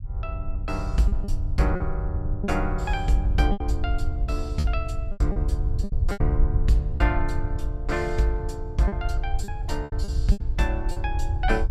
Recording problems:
rumble; below 74 Hz, SNR 1 dB
packet loss; 8% of the sound replaced, filled with repeated pitch periods

